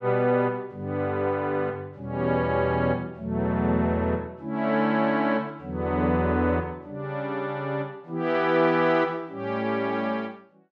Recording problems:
none

